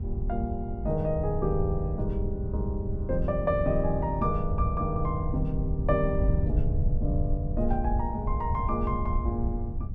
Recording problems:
mains hum; 60 Hz, harmonics up to 540 Hz, SNR 13 dB
wind noise; below 84 Hz, SNR 1 dB

